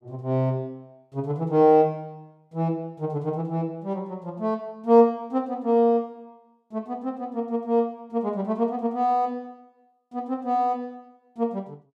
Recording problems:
none

